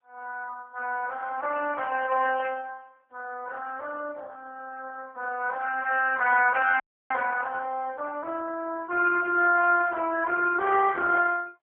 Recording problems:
phone line; 300 Hz to 2.7 kHz, AMR-NB
frozen audio; at 7 s

